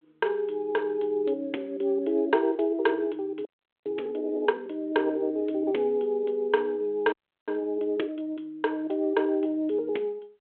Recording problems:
telephone audio; 280 Hz to 3.6 kHz, G.726
audio freezing; at 3.5 s and at 7 s

